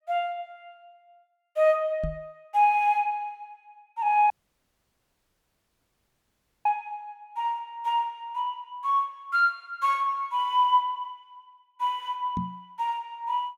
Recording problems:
knock on the microphone; at 2 s and at 12 s; peak -2 dB vs average level
dropout; at 4.5 s for 2.5 s

